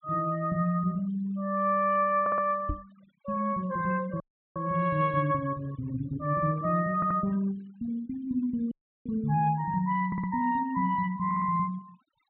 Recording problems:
treble missing; nothing above 4 kHz
noise reduction artefacts; signal-to-artefact ratio 25 dB
stutter; 4 times, first at 2 s
microphone bump; at 2.5 s; peak -1 dB vs average level
audio cutting out; at 4 s and at 8.5 s

